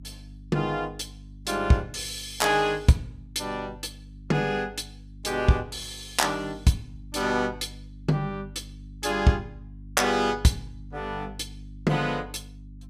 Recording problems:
hum; 50 Hz, harmonics up to 300 Hz, SNR 18 dB

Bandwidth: 15.5 kHz